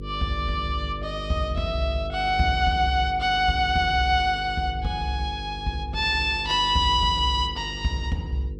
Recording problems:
electrical hum; 50 Hz, harmonics up to 500 Hz, SNR 13 dB

